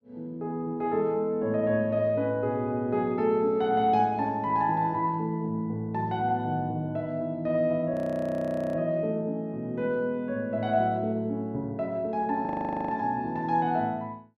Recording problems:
frozen audio; at 8 s for 1 s and at 12 s

